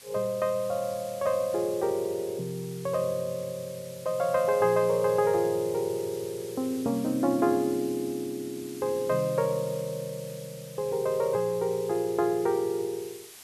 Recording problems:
hiss; slope +1 dB per octave, SNR 17 dB

